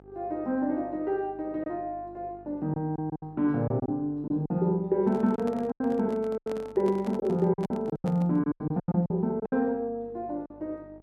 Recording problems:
hum; 50 Hz, harmonics up to 1.3 kHz, SNR 25 dB
lost packets; 9% of the sound replaced, filled with silence
handling noise; from 5 to 8.5 s; peak -7 dB vs average level

